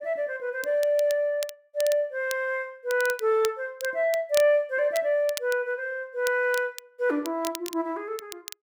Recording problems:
crackle; vinyl, SNR 14 dB

